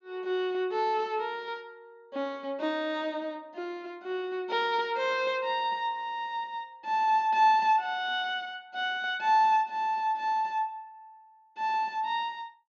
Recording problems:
low-pass filter; nothing above 7 kHz

